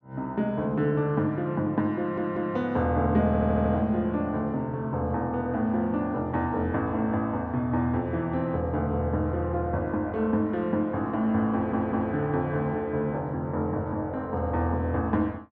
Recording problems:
audio stuttering; at 2 s, at 3.5 s and at 12 s

